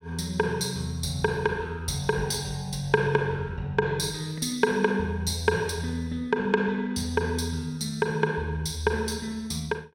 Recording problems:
none

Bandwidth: 16.5 kHz